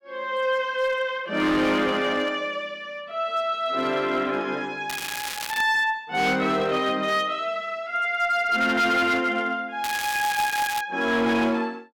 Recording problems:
distortion; hard clipping, signal-to-distortion ratio 12 dB
crackling; at 5 s and at 10 s; loose cable, SNR 8 dB

